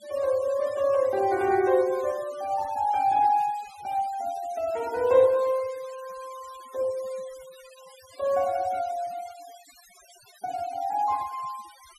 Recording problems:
noise reduction artefacts; signal-to-artefact ratio 22 dB

